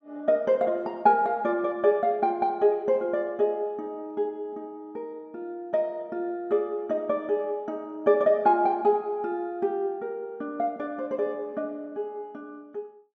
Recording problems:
treble cut off; nothing above 8 kHz

